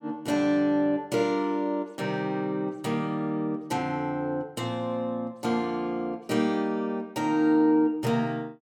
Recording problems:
none

